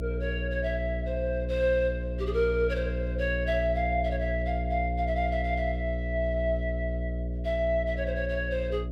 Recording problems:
mains hum; 60 Hz, harmonics up to 660 Hz, SNR 3 dB

